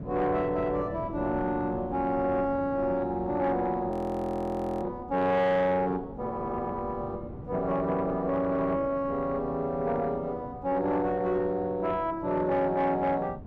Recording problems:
distortion; soft clipping, signal-to-distortion ratio 11 dB
wind on the microphone; below 320 Hz, SNR 14 dB
frozen audio; at 4 s for 1 s

